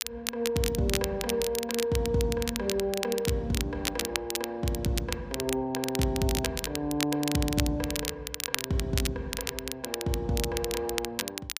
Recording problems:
crackling; vinyl, SNR 4 dB

